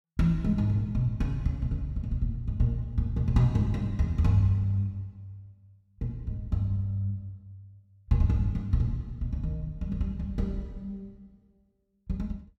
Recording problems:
none

